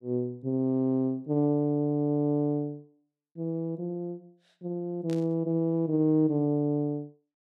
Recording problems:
burst of static; at 5 s; peak -14 dB vs average level

